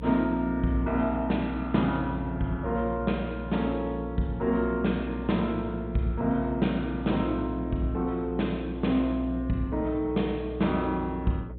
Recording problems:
low-pass filter; nothing above 4 kHz
hum; 60 Hz, harmonics up to 540 Hz, SNR 10 dB

